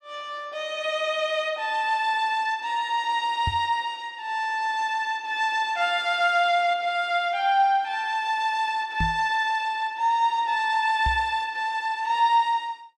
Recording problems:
microphone thump; at 3.5 s, at 9 s and at 11 s; peak -1 dB vs average level

